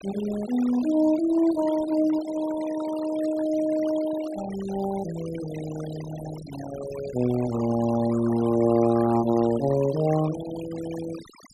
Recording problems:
denoising artefacts; signal-to-artefact ratio 15 dB

